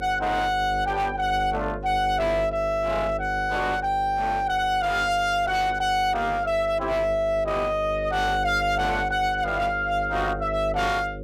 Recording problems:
distortion; hard clipping, uneven, signal-to-distortion ratio 7 dB
hum; 50 Hz, harmonics up to 550 Hz, SNR 11 dB

